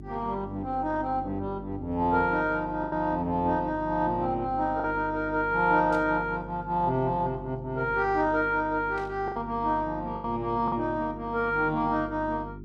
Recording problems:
codec artefacts; Opus, log-spectral distance 2 dB
hum; 50 Hz, harmonics up to 400 Hz, SNR 14 dB
packet loss; 3% of the sound replaced, filled with the last packet
static burst; at 6 s and at 9 s; peak -17 dB vs average level

